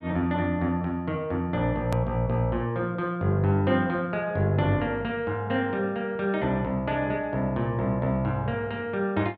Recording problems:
edit click; at 2 s

